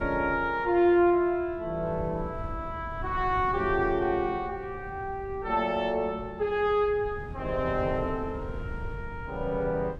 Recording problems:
wind on the microphone; below 140 Hz, SNR 14 dB

